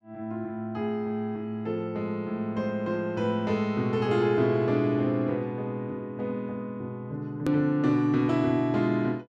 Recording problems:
edit click; at 7.5 s

